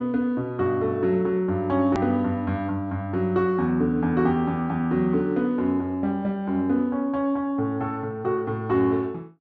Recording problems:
treble cut off; nothing above 8 kHz
edit click; at 2 s

